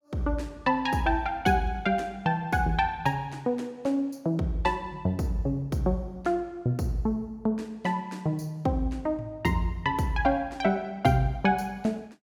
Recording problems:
none

